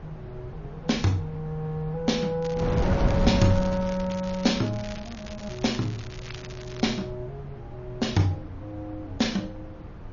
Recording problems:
treble cut off; nothing above 6.9 kHz
lossy compression; MP3, log-spectral distance 3 dB
wind noise; below 250 Hz, SNR 7 dB
crackle; from 2.5 to 7 s; loose cable, SNR 17 dB

